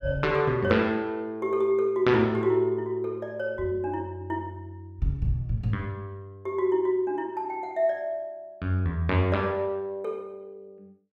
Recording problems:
none

